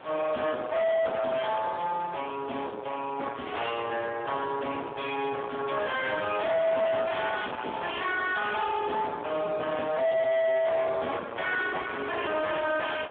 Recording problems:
phone line; 280 Hz to 3.6 kHz, Speex
distorted audio; soft clipping, signal-to-distortion ratio 7 dB
background hiss; SNR 19 dB

